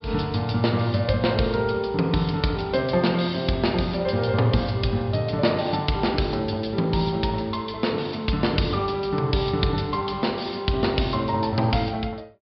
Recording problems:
low-pass filter; nothing above 5.2 kHz

